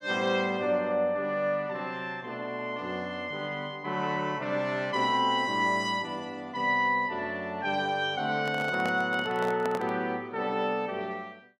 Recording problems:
microphone handling noise; from 8.5 to 10 s; peak -2 dB vs average level

